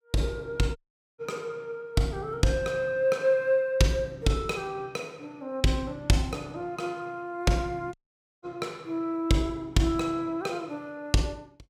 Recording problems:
audio cutting out; at 1 s and at 8 s

